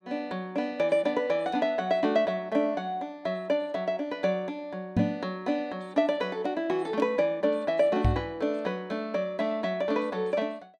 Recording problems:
microphone bump; at 5 s and at 8 s; peak +7 dB vs average level

